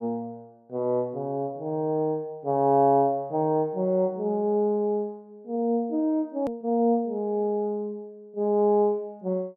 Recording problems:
click at an edit; at 6.5 s

